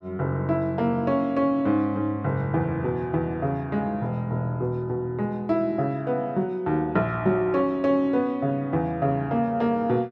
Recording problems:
none

